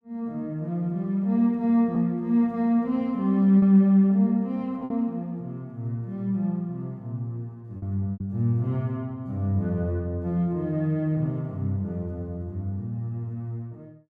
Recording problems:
packet loss; 1.9% of the sound replaced, filled with repeated pitch periods

